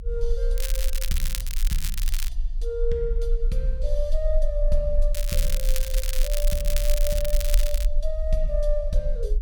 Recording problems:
rumble; below 36 Hz, strongest tone 22 Hz, SNR -3 dB
crackle; from 0.5 to 2.5 s and from 5 to 8 s; loose cable, SNR 2 dB

